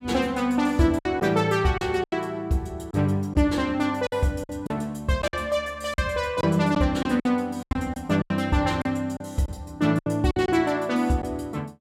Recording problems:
lost packets; 8% of the sound replaced, filled with silence

